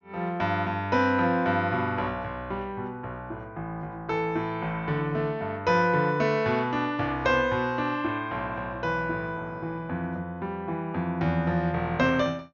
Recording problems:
treble cut off; nothing above 6.8 kHz

